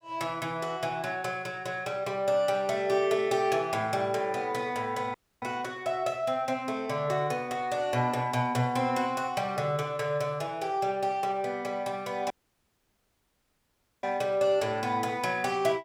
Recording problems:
dropout; at 5 s and at 12 s for 1.5 s

